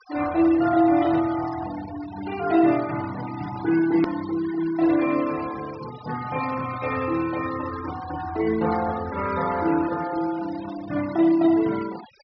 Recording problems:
treble cut off; nothing above 5.5 kHz
denoising artefacts; signal-to-artefact ratio 15 dB
edit click; at 4 s

